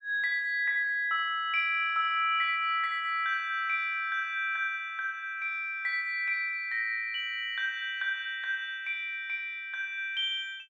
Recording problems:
none

